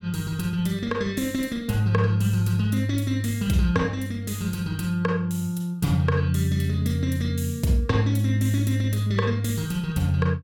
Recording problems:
none

